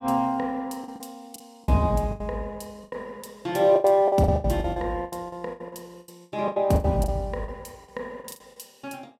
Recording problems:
packet loss; 16% of the sound replaced, filled with the last packet

